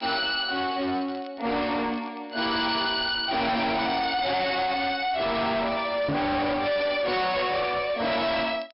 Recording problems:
treble cut off; nothing above 5.3 kHz
distorted audio; hard clipping, uneven, signal-to-distortion ratio 6 dB
crackle; vinyl, SNR 27 dB
microphone bump; at 6 s; peak +1 dB vs average level

